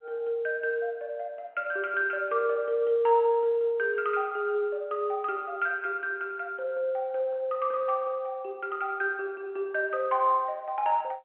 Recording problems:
telephone audio; 220 Hz to 3.2 kHz, G.711

